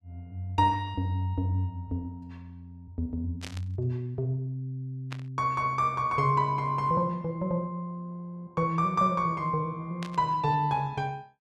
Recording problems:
burst of static; at 3.5 s, at 5 s and at 10 s; peak -6 dB vs average level

